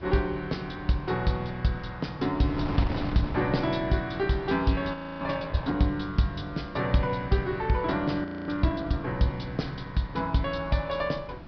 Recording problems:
treble cut off; nothing above 5.5 kHz
wind noise; below 520 Hz, SNR 13 dB
frozen audio; at 5 s and at 8 s

